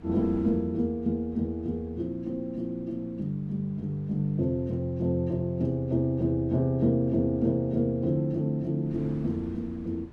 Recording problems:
wind on the microphone; below 280 Hz, SNR 22 dB

